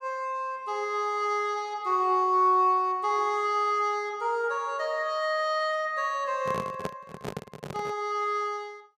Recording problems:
microphone handling noise; from 6.5 to 8 s; peak -2 dB vs average level

